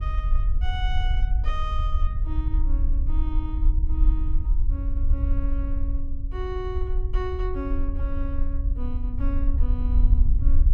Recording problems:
rumble; below 56 Hz, SNR -10 dB

